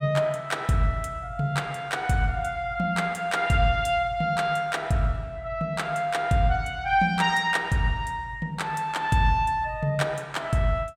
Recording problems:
none

